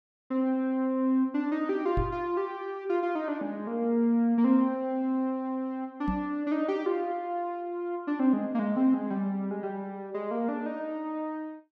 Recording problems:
microphone thump; at 2 s and at 6 s; peak +1 dB vs average level

